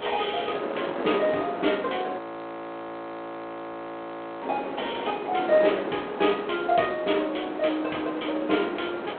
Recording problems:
telephone audio; 260 Hz to 3.4 kHz, G.726
wind noise; below 1 kHz, SNR 7 dB
audio freezing; at 2 s for 2 s

